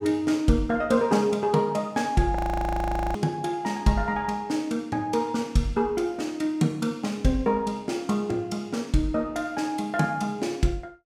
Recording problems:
frozen audio; at 2.5 s for 1 s

